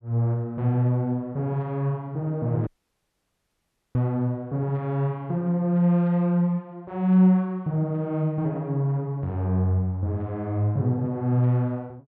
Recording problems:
audio cutting out; at 2.5 s for 1.5 s

